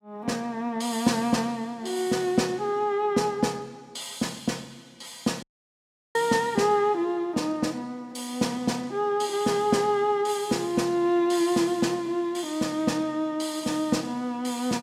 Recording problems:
dropout; at 5.5 s for 0.5 s

